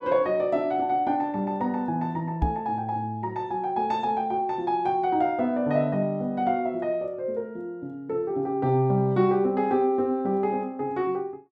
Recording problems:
microphone bump; at 2.5 s; peak +4 dB vs average level

